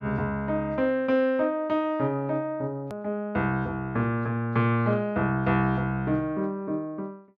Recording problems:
edit click; at 3 s

